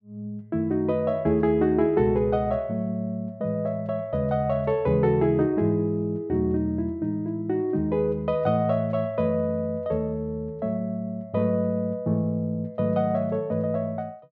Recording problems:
none

